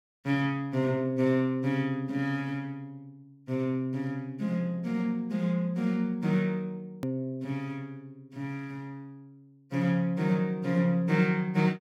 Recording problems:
hard cut with a click; at 7 s

